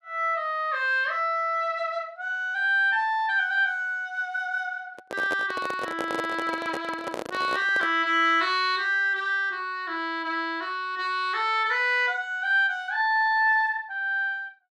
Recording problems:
microphone handling noise; from 5 to 8 s; peak -3 dB vs average level

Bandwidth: 12.5 kHz